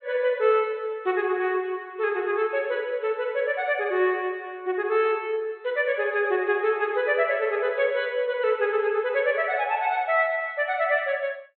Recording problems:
low-pass filter; nothing above 4 kHz

